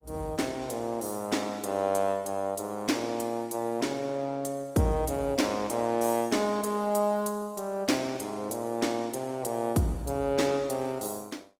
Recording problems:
codec artefacts; Opus, log-spectral distance 4 dB

